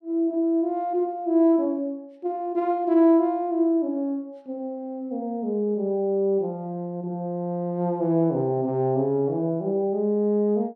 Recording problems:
none

